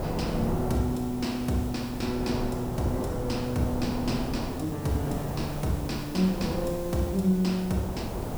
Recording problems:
background hiss; slope -2 dB per octave, SNR 16 dB
wind on the microphone; below 570 Hz, SNR 6 dB

